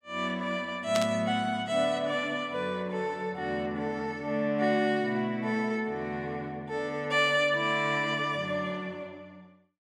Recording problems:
static burst; at 1 s; peak +1 dB vs average level

